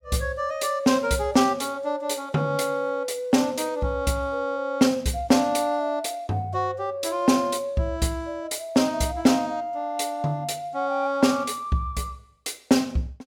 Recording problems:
none

